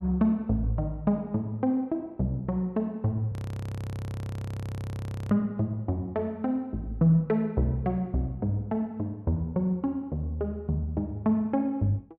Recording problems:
audio freezing; at 3.5 s for 2 s

